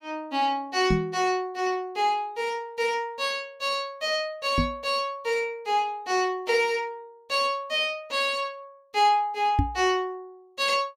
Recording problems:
microphone bump; at 1 s, at 4.5 s and at 9.5 s; peak +6 dB vs average level

